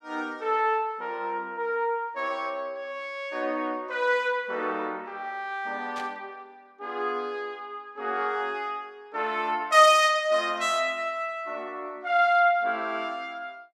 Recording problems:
burst of static; at 6 s; peak -11 dB vs average level

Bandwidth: 15 kHz